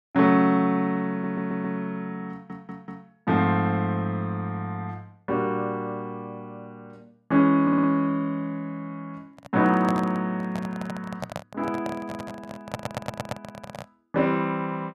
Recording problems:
stutter; 4 times, first at 1 s
handling noise; from 9.5 to 14 s; peak -2 dB vs average level

